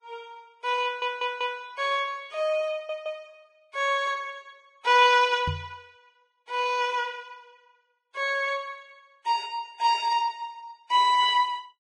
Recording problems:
lossy codec; Vorbis, log-spectral distance 3 dB
audio stuttering; at 1 s and at 2.5 s
microphone thump; at 5.5 s; peak -1 dB vs average level

